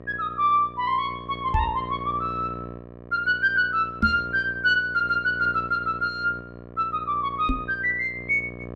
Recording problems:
electrical hum; 60 Hz, harmonics up to 1.8 kHz, SNR 16 dB
microphone thump; at 1.5 s, at 4 s and at 7.5 s; peak +2 dB vs average level

